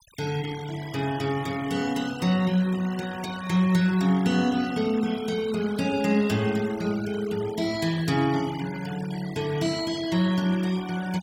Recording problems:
denoising artefacts; signal-to-artefact ratio 16 dB

